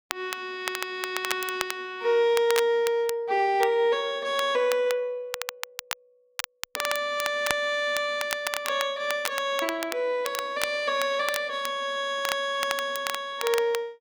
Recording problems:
crackle; vinyl, SNR 8 dB

